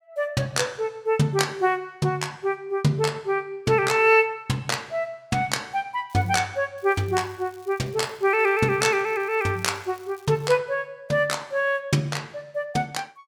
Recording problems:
crackling; at 6 s and from 7 to 10 s; loose cable, SNR 29 dB

